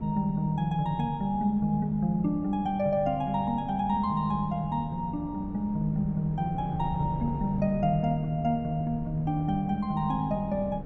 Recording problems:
wind on the microphone; below 220 Hz, SNR 13 dB

